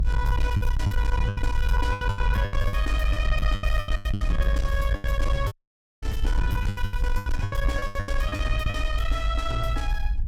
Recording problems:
distorted audio; soft clipping, signal-to-distortion ratio 11 dB
rumble; below 56 Hz, SNR -3 dB
wind noise; below 86 Hz, SNR 3 dB
lost packets; 17% of the sound replaced, filled with the last packet
dropout; at 5.5 s for 0.5 s

